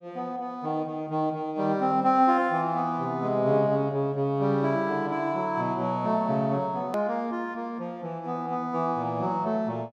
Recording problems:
edit click; at 7 s

